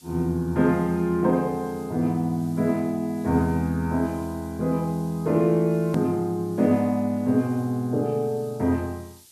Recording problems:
hiss; SNR 27 dB
click at an edit; at 6 s

